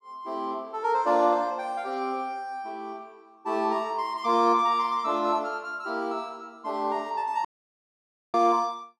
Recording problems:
dropout; at 7.5 s for 1 s

